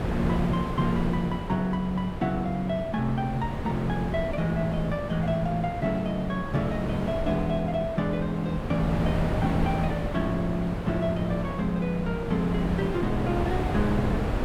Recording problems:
wind on the microphone; below 550 Hz, SNR 4 dB

